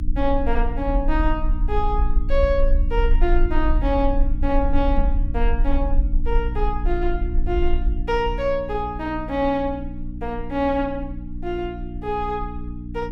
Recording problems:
mains hum; 60 Hz, harmonics up to 300 Hz, SNR 9 dB
rumble; below 46 Hz, strongest tone 24 Hz, SNR 0 dB
knock on the microphone; at 5 s; peak -3 dB vs average level

